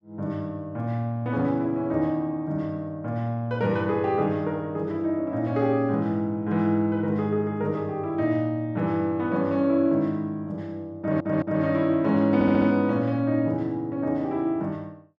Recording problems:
audio stuttering; at 11 s and at 12 s

